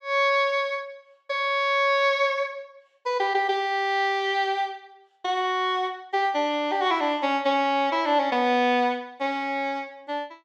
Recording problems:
none

